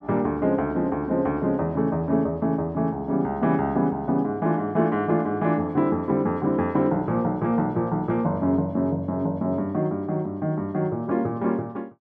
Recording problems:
none

